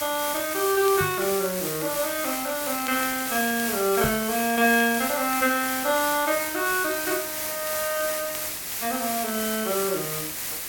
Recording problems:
background hiss; slope 0 dB per octave, SNR 3 dB
crackling; vinyl, SNR 20 dB
microphone thump; at 1 s and at 4 s; peak -2 dB vs average level

